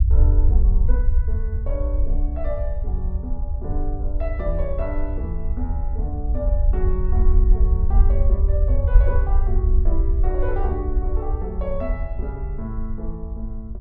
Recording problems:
low-frequency rumble; below 60 Hz, SNR -9 dB

